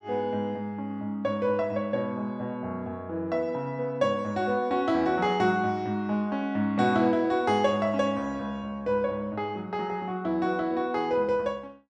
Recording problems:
none

